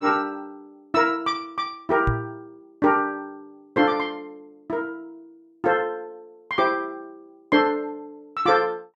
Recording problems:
microphone thump; at 2 s; peak +3 dB vs average level

